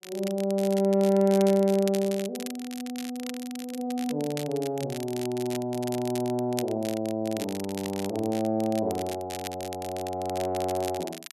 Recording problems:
crackling; vinyl, SNR 13 dB

